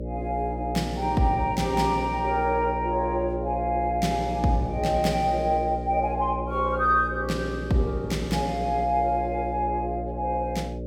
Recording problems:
hum; 60 Hz, harmonics up to 600 Hz, SNR 7 dB

